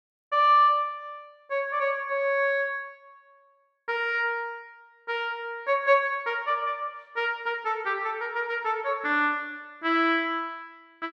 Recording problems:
none

